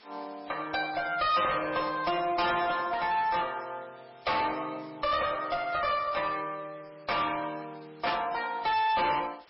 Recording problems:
lossy codec; MP3, log-spectral distance 8 dB, nothing above 5.3 kHz
distortion; hard clipping, uneven, signal-to-distortion ratio 7 dB
hiss; slope -2 dB per octave, SNR 27 dB
static burst; at 8 s; peak +1 dB vs average level

